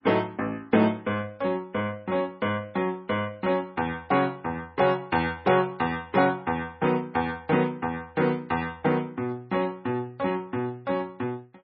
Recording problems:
lossy compression; MP3, log-spectral distance 2 dB, nothing above 5.3 kHz

